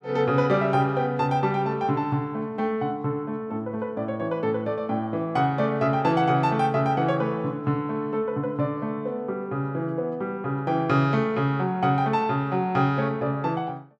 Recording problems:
none

